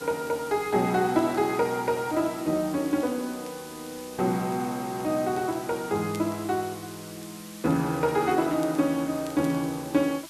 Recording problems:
hiss; slope +2 dB per octave, SNR 17 dB
crackle; vinyl, SNR 30 dB

